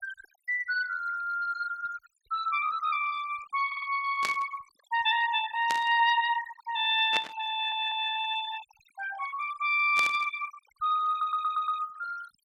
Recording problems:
noise reduction artefacts; signal-to-artefact ratio 15 dB
stutter; at 3.5 s, at 7.5 s and at 11 s
static burst; 4 times, first at 4 s; peak 0 dB vs average level

